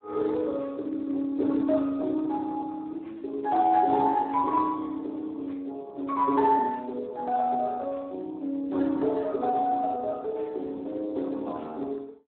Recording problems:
telephone audio; 240 Hz to 2.2 kHz, Speex

